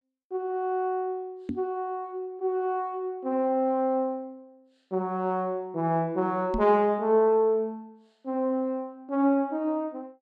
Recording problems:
microphone bump; at 1.5 s and at 6.5 s; peak -1 dB vs average level

